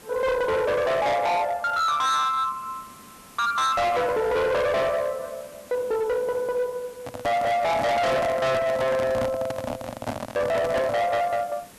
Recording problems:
distortion; hard clipping, signal-to-distortion ratio 6 dB
hiss; slope -3 dB per octave, SNR 24 dB
handling noise; from 7 to 11 s; peak -1 dB vs average level

